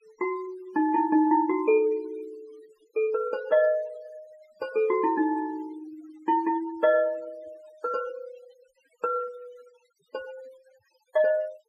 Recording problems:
noise reduction artefacts; signal-to-artefact ratio 26 dB

